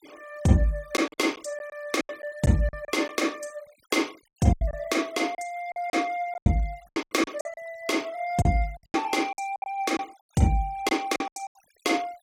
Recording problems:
denoising artefacts; signal-to-artefact ratio 24 dB
packet loss; 11% of the sound replaced, filled with silence

